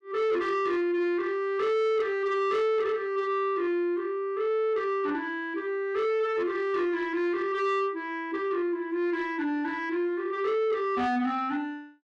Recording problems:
distorted audio; soft clipping, signal-to-distortion ratio 11 dB

